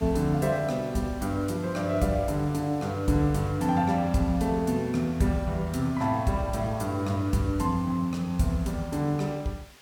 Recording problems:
hiss; slope -1 dB per octave, SNR 24 dB

